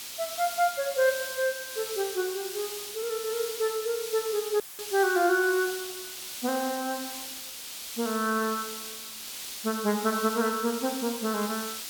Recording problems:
hiss; slope +3 dB per octave, SNR 7 dB
dropout; at 4.5 s; filled with static

